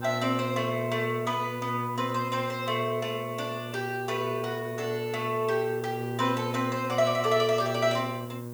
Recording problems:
hum; 60 Hz, harmonics up to 1.1 kHz, SNR 7 dB
background hiss; slope 0 dB per octave, SNR 21 dB

